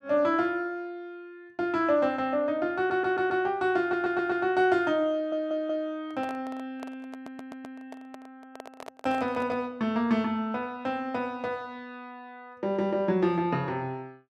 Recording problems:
stutter; 4 times, first at 3 s
handling noise; from 6 to 9.5 s; peak -9 dB vs average level

